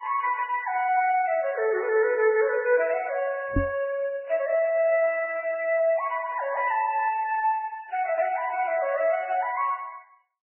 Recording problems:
lossy codec; MP3, then Vorbis, log-spectral distance 3 dB, nothing above 2.7 kHz
microphone thump; at 3.5 s; peak +4 dB vs average level

